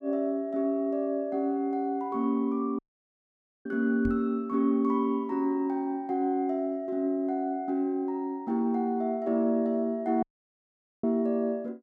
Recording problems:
dropout; at 3 s for 1 s and at 10 s for 1 s
knock on the microphone; at 4 s; peak -2 dB vs average level

